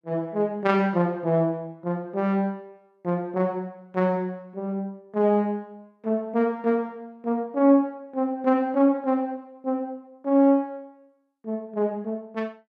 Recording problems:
none

